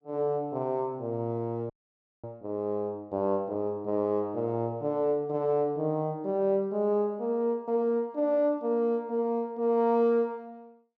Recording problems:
frozen audio; at 1.5 s for 0.5 s

